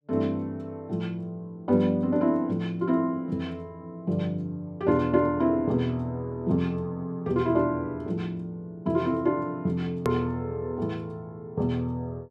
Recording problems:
hard cut with a click; at 10 s

